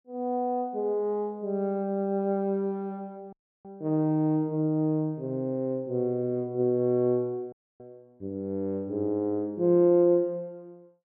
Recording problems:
dropout; at 3.5 s and at 7.5 s

